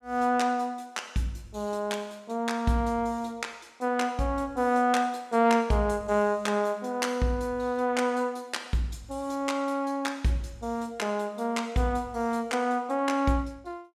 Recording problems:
none

